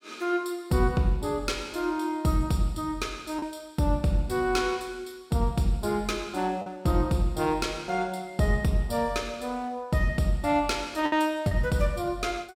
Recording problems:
packet loss; 1.3% of the sound replaced, filled with the last packet

